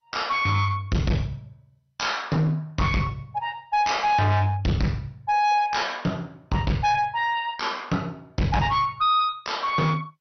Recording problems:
lossy compression; MP2, log-spectral distance 3 dB, nothing above 6 kHz
distorted audio; hard clipping, uneven, signal-to-distortion ratio 6 dB

